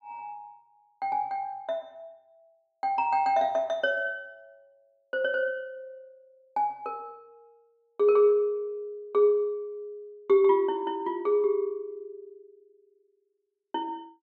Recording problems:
none

